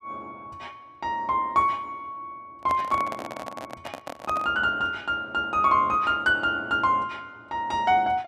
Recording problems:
handling noise; from 2.5 to 4.5 s; peak -4 dB vs average level

